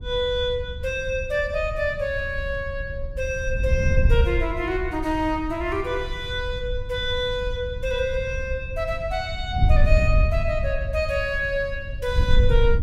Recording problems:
wind on the microphone; below 80 Hz, SNR 2 dB

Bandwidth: 16 kHz